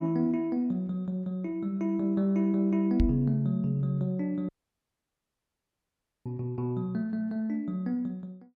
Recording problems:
knock on the microphone; at 3 s; peak +6 dB vs average level
audio cutting out; at 4.5 s for 2 s

